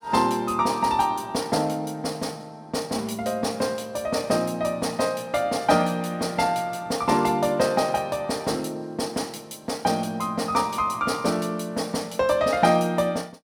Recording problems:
none

